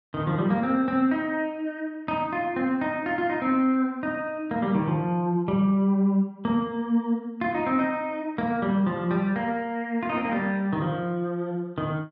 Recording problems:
none

